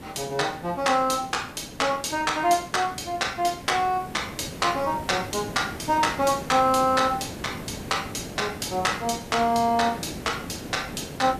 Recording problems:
hiss; SNR 13 dB

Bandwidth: 14.5 kHz